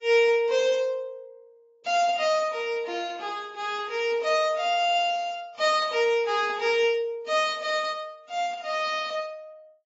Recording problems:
lossy codec; AAC, log-spectral distance 2 dB, nothing above 6.9 kHz

